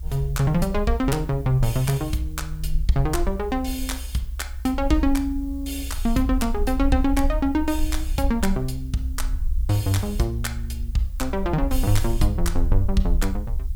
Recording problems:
background hiss; slope +1 dB per octave, SNR 28 dB
rumble; below 62 Hz, SNR 5 dB

